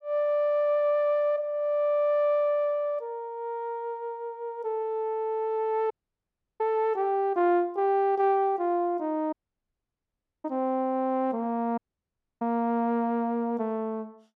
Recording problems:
dropout; at 6 s for 0.5 s, at 9.5 s for 1 s and at 12 s for 0.5 s

